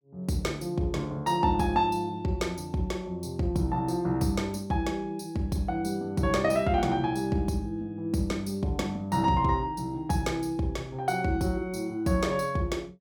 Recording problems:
none

